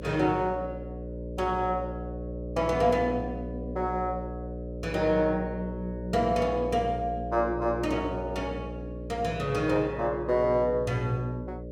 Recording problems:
hum; 60 Hz, harmonics up to 600 Hz, SNR 8 dB

